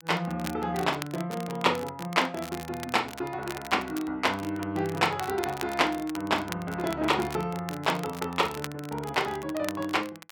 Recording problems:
crackling; vinyl, SNR 14 dB

